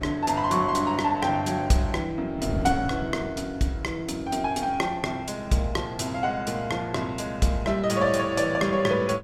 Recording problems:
wind on the microphone; below 210 Hz, SNR 15 dB

